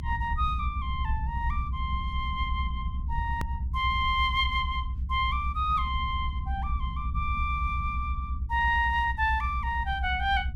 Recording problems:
low-frequency rumble; below 70 Hz, SNR 3 dB
edit click; at 3.5 s

